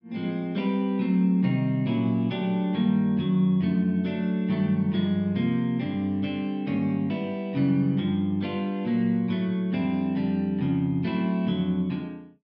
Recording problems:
treble cut off; nothing above 5.5 kHz

